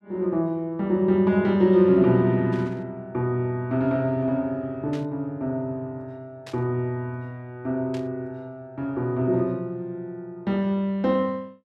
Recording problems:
burst of static; 4 times, first at 2.5 s; peak -13 dB vs average level

